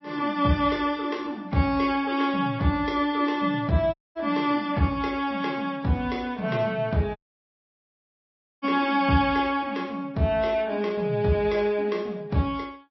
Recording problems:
lossy codec; MP3, log-spectral distance 2 dB, nothing above 5.3 kHz
audio cutting out; at 4 s and at 7 s for 1.5 s

